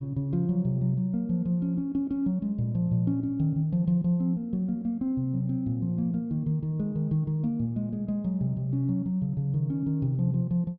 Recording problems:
treble missing; nothing above 5.5 kHz

